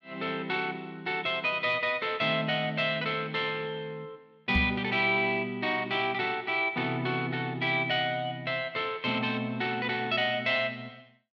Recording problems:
microphone bump; at 4.5 s; peak +2 dB vs average level

